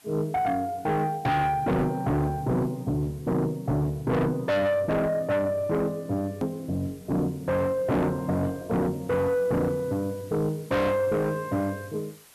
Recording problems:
distortion; soft clipping, signal-to-distortion ratio 7 dB
hiss; slope 0 dB per octave, SNR 26 dB
edit click; at 6.5 s

